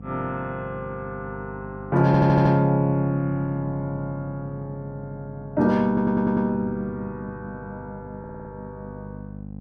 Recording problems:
hum; 50 Hz, harmonics up to 800 Hz, SNR 15 dB
audio stuttering; at 2 s, at 6 s and at 8 s

